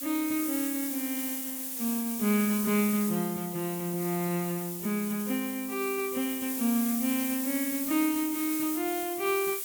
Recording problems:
hiss; slope +2 dB per octave, SNR 3 dB

